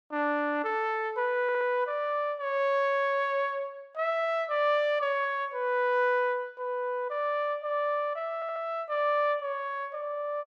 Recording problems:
stutter; at 1.5 s and at 8.5 s

